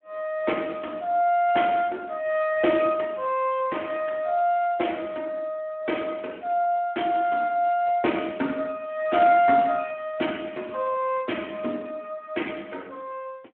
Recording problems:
telephone audio; 240 Hz to 3.3 kHz, Speex

